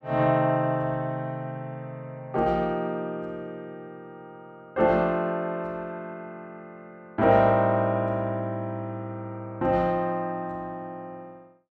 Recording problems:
none

